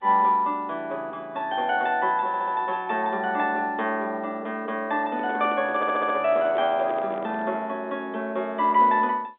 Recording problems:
telephone audio; 260 Hz to 4 kHz, G.711
stutter; at 2.5 s and at 6 s
microphone handling noise; from 5 to 7.5 s; peak -8 dB vs average level

